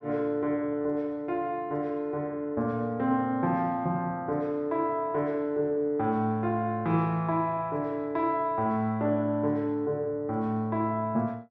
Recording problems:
none

